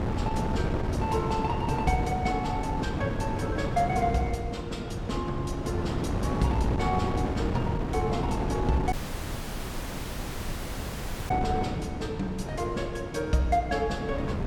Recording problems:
wind noise; below 370 Hz, SNR 1 dB
audio cutting out; at 9 s for 2.5 s

